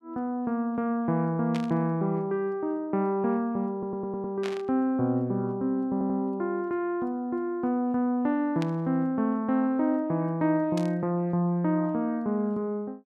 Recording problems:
static burst; 4 times, first at 1.5 s; peak -6 dB vs average level
stutter; at 3.5 s and at 6 s

